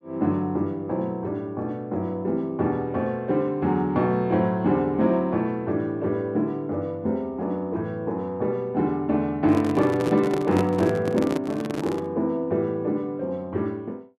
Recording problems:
microphone handling noise; from 9.5 to 12 s; peak +1 dB vs average level

